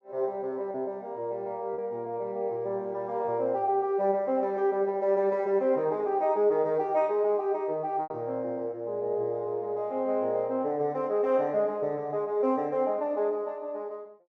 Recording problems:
lost packets; 1.1% of the sound replaced, filled with repeated pitch periods

